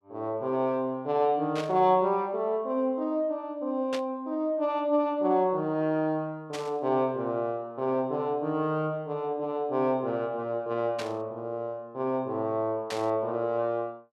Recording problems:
burst of static; 5 times, first at 1.5 s; peak -4 dB vs average level

